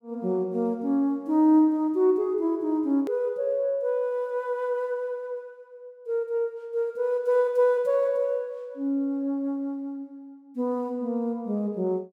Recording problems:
edit click; at 3 s

